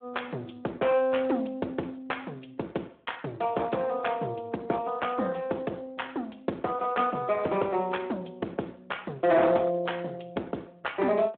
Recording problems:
telephone audio; 220 Hz to 3.5 kHz, Speex
distortion; hard clipping, signal-to-distortion ratio 14 dB

